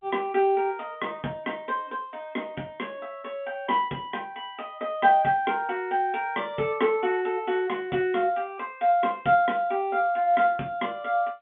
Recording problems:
telephone audio; 220 Hz to 3.5 kHz, G.711

